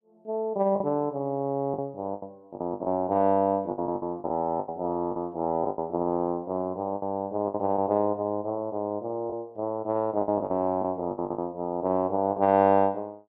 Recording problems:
lost packets; 9% of the sound replaced, filled with the last packet

